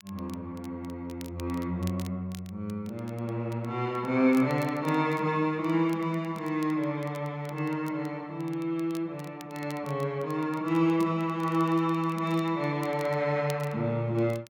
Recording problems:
crackling; vinyl, SNR 23 dB

